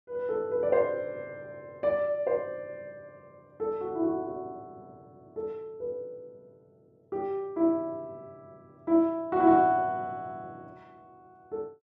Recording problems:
none

